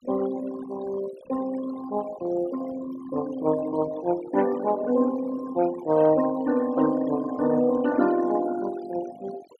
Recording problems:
denoising artefacts; signal-to-artefact ratio 15 dB

